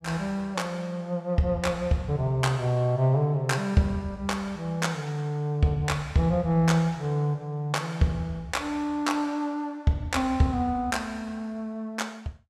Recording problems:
none

